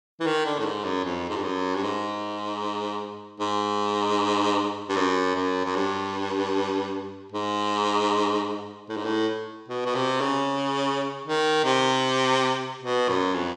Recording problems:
none

